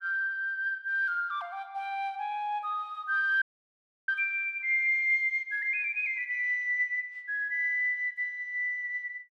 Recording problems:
dropout; at 3.5 s for 0.5 s

